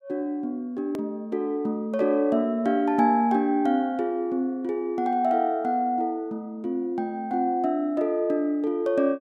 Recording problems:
hard cut with a click; at 1 s

